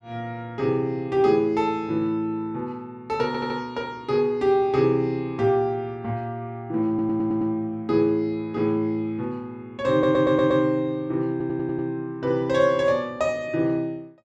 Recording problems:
audio stuttering; 4 times, first at 3.5 s

